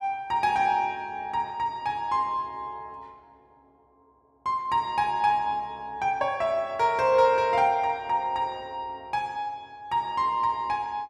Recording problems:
none

